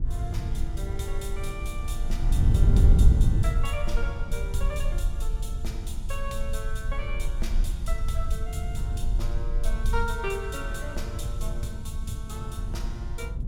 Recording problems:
low-frequency rumble; below 40 Hz, strongest tone 20 Hz, SNR -1 dB
wind noise; below 100 Hz, SNR -7 dB

